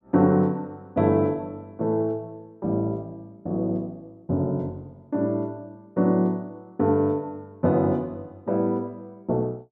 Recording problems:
none

